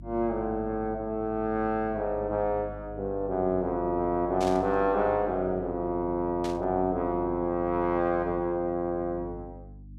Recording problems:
hum; 50 Hz, harmonics up to 300 Hz, SNR 16 dB
static burst; at 4.5 s and at 6.5 s; peak -8 dB vs average level

